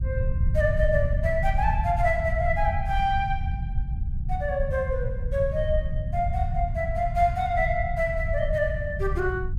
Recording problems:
low-frequency rumble; below 98 Hz, SNR 2 dB

